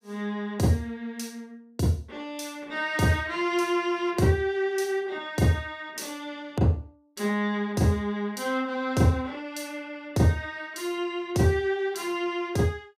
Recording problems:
none

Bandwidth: 15.5 kHz